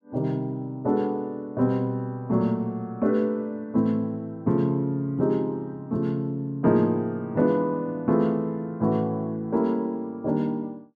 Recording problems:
none

